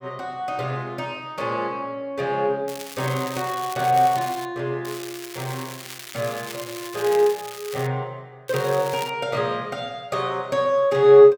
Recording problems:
crackle; from 2.5 to 4.5 s, from 5 to 8 s and at 8.5 s; loose cable, SNR 13 dB

